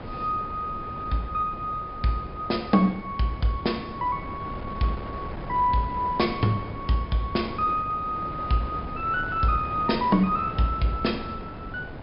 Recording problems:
treble missing; nothing above 5.5 kHz
wind noise; below 600 Hz, SNR 11 dB

